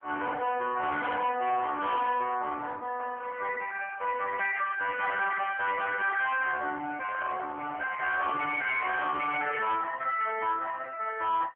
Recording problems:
telephone audio; 300 Hz to 3.4 kHz, AMR-NB
distorted audio; hard clipping, signal-to-distortion ratio 10 dB
microphone handling noise; from 7 to 9 s; peak -5 dB vs average level

